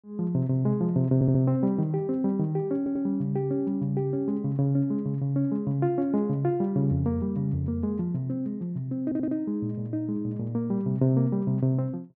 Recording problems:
audio stuttering; at 1 s, at 3 s and at 9 s

